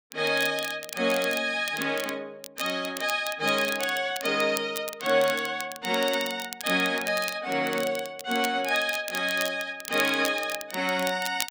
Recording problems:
crackling; vinyl, SNR 12 dB

